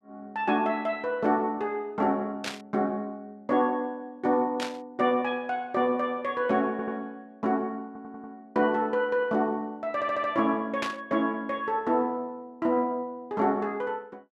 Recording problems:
burst of static; at 2.5 s, at 4.5 s and at 11 s; peak 0 dB vs average level
audio stuttering; at 6.5 s, at 8 s and at 10 s

